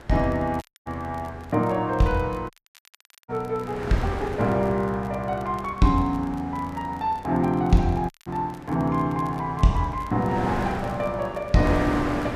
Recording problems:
wind noise; below 1.2 kHz, SNR 11 dB
crackle; vinyl, SNR 29 dB
audio cutting out; at 0.5 s, at 2.5 s for 1 s and at 8 s

